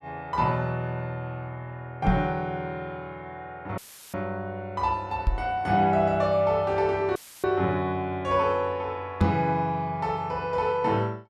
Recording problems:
microphone bump; at 2 s, at 5.5 s and at 9 s; peak +8 dB vs average level
audio cutting out; at 4 s and at 7 s; filled with static

